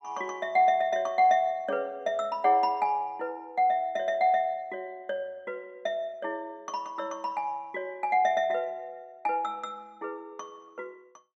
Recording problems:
none

